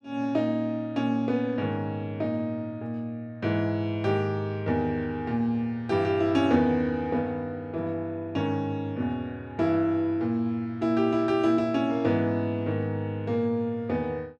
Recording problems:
none

